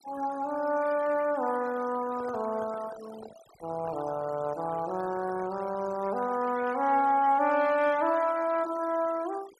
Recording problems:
denoising artefacts; signal-to-artefact ratio 19 dB
microphone handling noise; from 2 to 6 s; peak -12 dB vs average level

